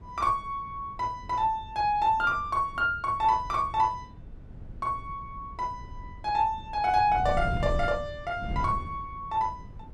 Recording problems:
wind noise; below 140 Hz, SNR 13 dB

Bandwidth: 14 kHz